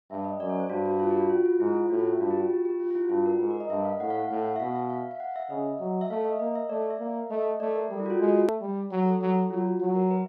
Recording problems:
hard cut with a click; at 8.5 s

